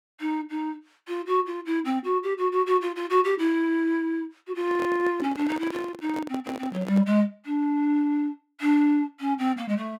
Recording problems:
handling noise; from 4.5 to 7 s; peak -6 dB vs average level

